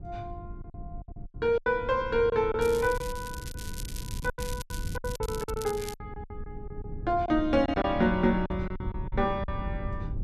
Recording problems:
hum; 50 Hz, harmonics up to 800 Hz, SNR 21 dB
low-frequency rumble; below 110 Hz, SNR 11 dB
lost packets; 11% of the sound replaced, filled with silence
crackling; from 2.5 to 6 s; loose cable, SNR 14 dB

